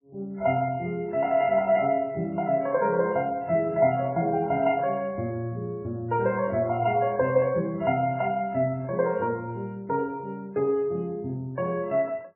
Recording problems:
lossy codec; MP3, then MP3, log-spectral distance 2 dB, nothing above 2.8 kHz

